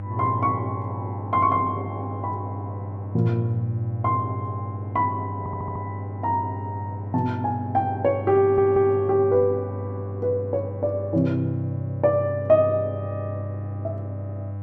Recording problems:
mains hum; 50 Hz, harmonics up to 800 Hz, SNR 8 dB
audio stuttering; at 5.5 s and at 8.5 s

